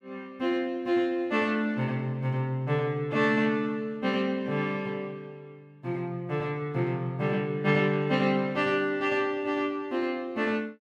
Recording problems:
none

